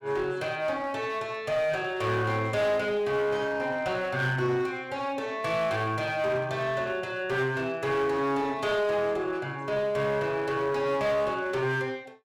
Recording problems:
distortion; hard clipping, uneven, signal-to-distortion ratio 11 dB

